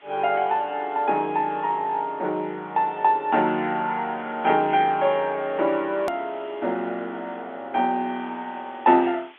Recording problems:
phone line; 220 Hz to 3.5 kHz, G.711
background hiss; SNR 27 dB
edit click; at 6 s

